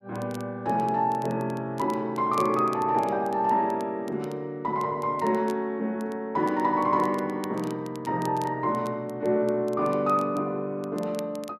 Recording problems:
crackle; vinyl, SNR 24 dB

